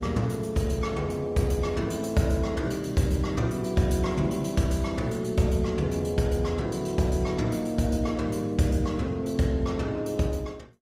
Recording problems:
codec artefacts; Opus, log-spectral distance 3 dB, nothing above 15.5 kHz

